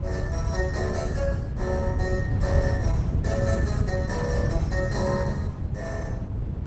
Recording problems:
codec artefacts; Opus, log-spectral distance 2 dB, nothing above 7.8 kHz
rumble; below 120 Hz, SNR -5 dB

